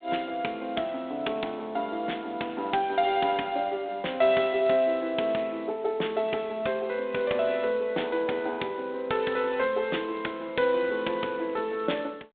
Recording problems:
phone line; 260 Hz to 3.7 kHz, G.726

